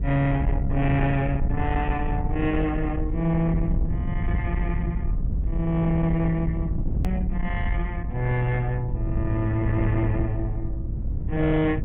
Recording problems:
treble missing; nothing above 3.6 kHz
distorted audio; soft clipping, signal-to-distortion ratio 12 dB
low-frequency rumble; below 110 Hz, SNR 3 dB
hard cut with a click; at 7 s

